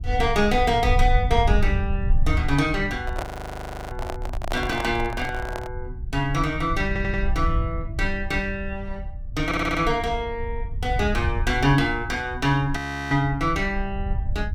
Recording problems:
low-frequency rumble; below 76 Hz, SNR 5 dB
microphone handling noise; from 3 to 5.5 s; peak -1 dB vs average level
audio freezing; at 3 s for 0.5 s and at 13 s
stutter; at 7 s and at 9.5 s

